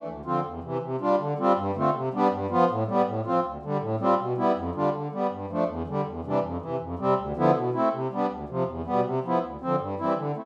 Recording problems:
none

